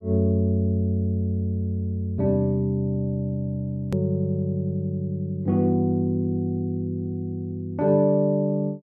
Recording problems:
click at an edit; at 4 s

